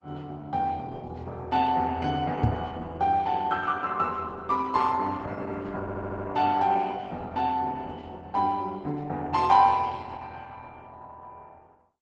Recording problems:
lossy codec; Opus, log-spectral distance 3 dB, nothing above 8 kHz
microphone thump; at 2.5 s; peak +7 dB vs average level
stutter; at 6 s

